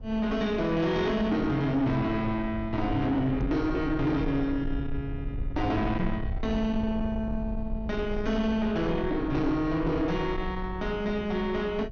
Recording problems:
treble cut off; nothing above 6.6 kHz
distorted audio; soft clipping, signal-to-distortion ratio 11 dB
low-frequency rumble; below 94 Hz, SNR 9 dB
microphone bump; at 3.5 s and at 6 s; peak +4 dB vs average level

